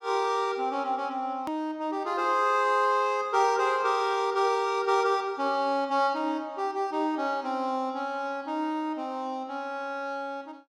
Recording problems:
hard cut with a click; at 1.5 s

